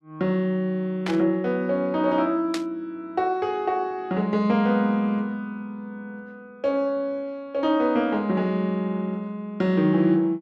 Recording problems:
static burst; at 1 s and at 2.5 s; peak -3 dB vs average level

